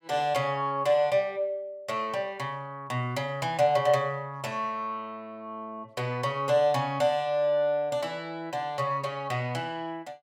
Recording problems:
none

